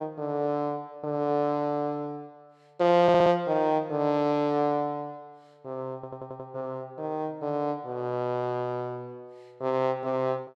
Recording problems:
audio stuttering; at 3 s and at 6 s

